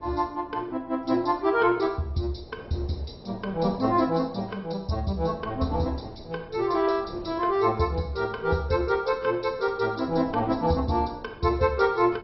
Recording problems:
treble missing; nothing above 5.5 kHz
codec artefacts; AAC, log-spectral distance 3 dB
wind on the microphone; below 540 Hz, SNR 20 dB

